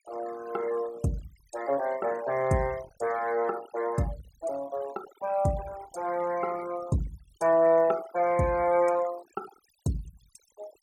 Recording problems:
denoising artefacts; signal-to-artefact ratio 19 dB

